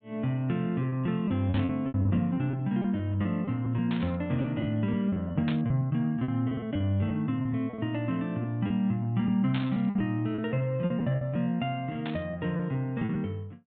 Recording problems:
treble cut off; nothing above 4 kHz
packet loss; 12% of the sound replaced, filled with repeated pitch periods
burst of static; 5 times, first at 1.5 s; peak -4 dB vs average level

